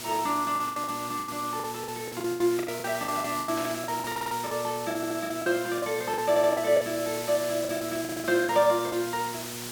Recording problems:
hum; 60 Hz, harmonics up to 960 Hz, SNR 15 dB
background hiss; slope 0 dB per octave, SNR 10 dB
packet loss; 16% of the sound replaced, filled with the last packet
burst of static; at 3.5 s; peak -8 dB vs average level
audio stuttering; 4 times, first at 4 s

